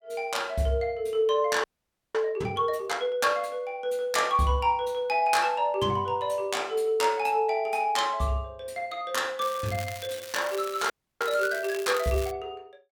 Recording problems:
frozen audio; at 1.5 s for 0.5 s and at 11 s
crackle; from 9.5 to 12 s; loose cable, SNR 14 dB

